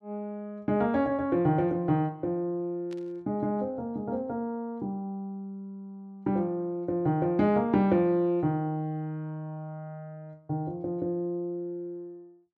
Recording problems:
burst of static; at 3 s; peak -17 dB vs average level

